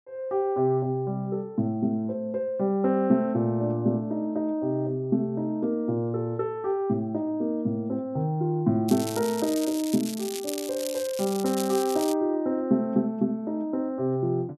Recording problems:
crackle; from 9 to 12 s; loose cable, SNR 10 dB

